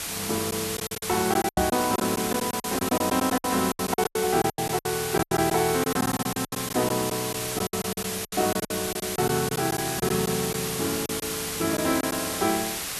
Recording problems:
hiss; slope 0 dB per octave, SNR 3 dB
packet loss; 14% of the sound replaced, filled with silence
microphone bump; at 1.5 s; peak +2 dB vs average level

